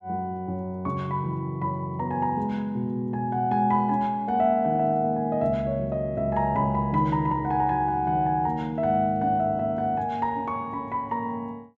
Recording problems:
none

